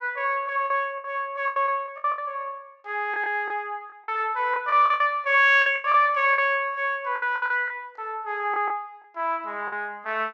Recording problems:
packet loss; 11% of the sound replaced, filled with the last packet

